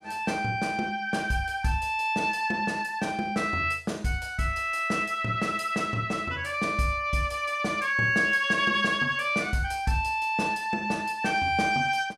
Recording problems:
none

